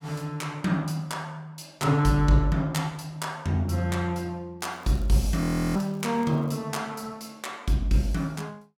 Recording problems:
crackling; from 4.5 to 6.5 s; loose cable, SNR 29 dB
audio freezing; at 5.5 s

